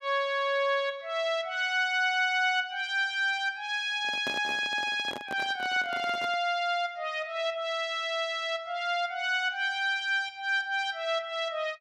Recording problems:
handling noise; from 4 to 6.5 s; peak -5 dB vs average level

